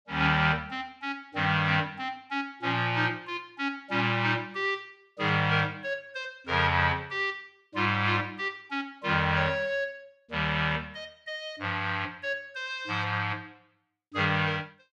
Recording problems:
none

